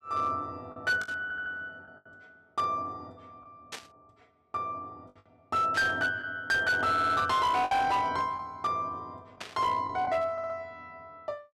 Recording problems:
distorted audio; hard clipping, signal-to-distortion ratio 12 dB
lost packets; 3% of the sound replaced, filled with the last packet
static burst; 4 times, first at 1 s; peak -5 dB vs average level
stutter; at 1 s, at 7 s and at 10 s

